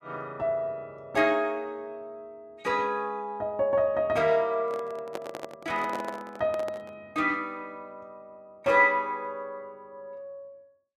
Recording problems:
handling noise; from 4.5 to 7 s; peak -4 dB vs average level

